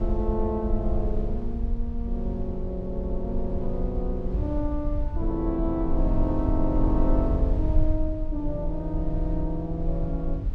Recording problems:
rumble; below 64 Hz, SNR 0 dB

